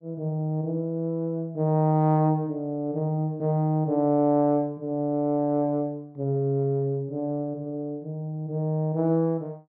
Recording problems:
none

